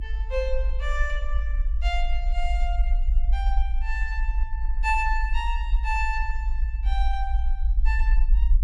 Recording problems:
rumble; below 52 Hz, SNR -4 dB

